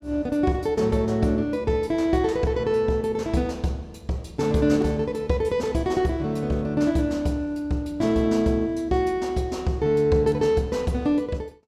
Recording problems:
none

